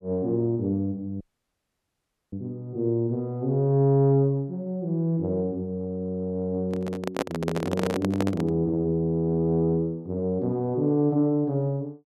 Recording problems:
dropout; at 1 s for 1 s
handling noise; from 6.5 to 8.5 s; peak +2 dB vs average level

